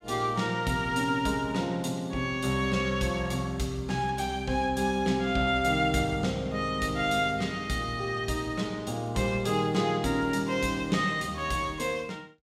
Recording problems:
none

